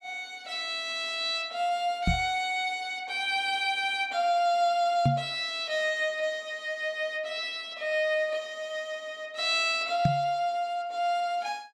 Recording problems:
microphone bump; at 2 s, at 5 s and at 10 s; peak +7 dB vs average level

